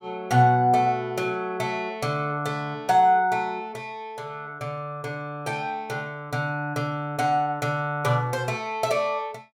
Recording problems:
none

